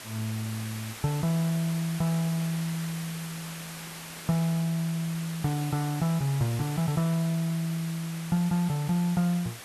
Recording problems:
hiss; slope -1 dB per octave, SNR 11 dB

